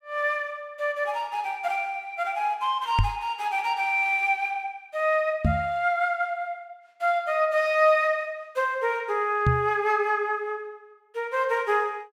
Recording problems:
microphone thump; at 3 s, at 5.5 s and at 9.5 s; peak +6 dB vs average level

